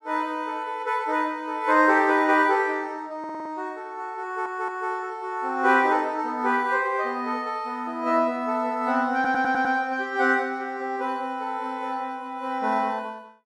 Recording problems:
audio stuttering; at 3 s, at 4 s and at 9 s

